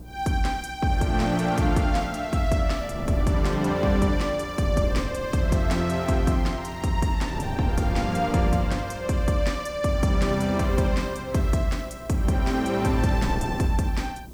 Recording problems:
mains hum; 60 Hz, harmonics up to 360 Hz, SNR 21 dB
background hiss; SNR 30 dB
wind noise; below 320 Hz, SNR 14 dB

